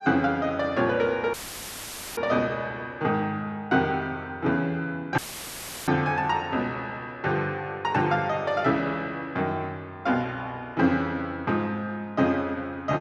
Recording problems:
audio cutting out; at 1.5 s for 1 s and at 5 s for 0.5 s; filled with static

